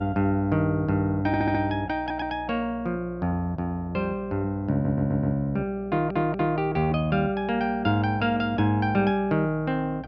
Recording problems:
hum; 60 Hz, harmonics up to 720 Hz, SNR 19 dB
audio stuttering; 4 times, first at 1.5 s

